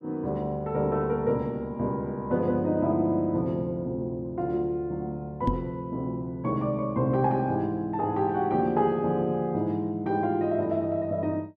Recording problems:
microphone bump; at 5.5 s; peak +4 dB vs average level

